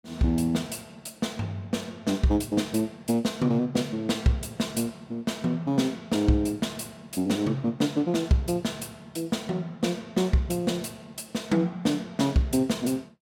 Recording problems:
none

